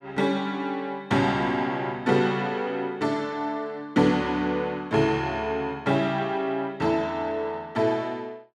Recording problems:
none

